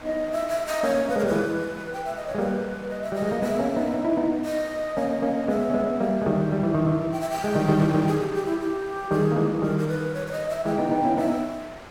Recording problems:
wind on the microphone; below 2 kHz, SNR 18 dB

